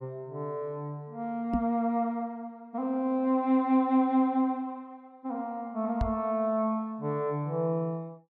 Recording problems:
microphone thump; at 1.5 s and at 6 s; peak +3 dB vs average level

